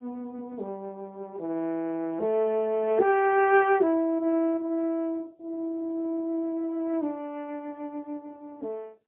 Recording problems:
telephone audio; 260 Hz to 3.1 kHz, AMR-NB, then MP3

